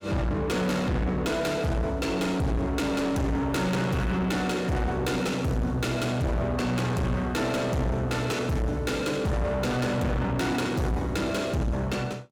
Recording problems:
distortion; soft clipping, signal-to-distortion ratio 7 dB

